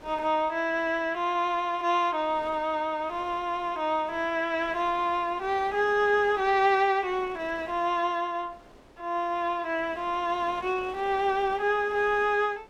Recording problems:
wind on the microphone; below 1.1 kHz, SNR 23 dB

